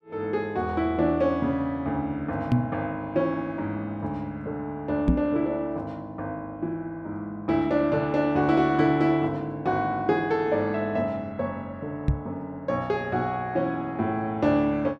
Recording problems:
microphone thump; at 2.5 s, at 5 s and at 12 s; peak +9 dB vs average level

